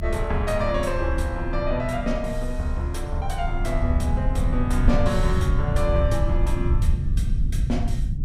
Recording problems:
rumble; below 88 Hz, SNR 0 dB

